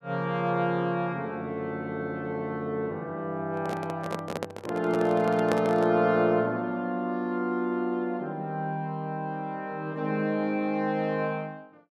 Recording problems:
microphone handling noise; from 3.5 to 6 s; peak +4 dB vs average level

